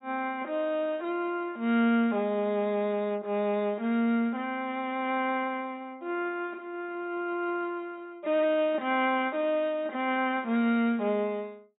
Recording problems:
treble cut off; nothing above 4 kHz

